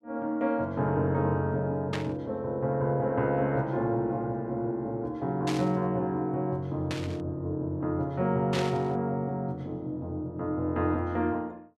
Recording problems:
static burst; 4 times, first at 2 s; peak -1 dB vs average level

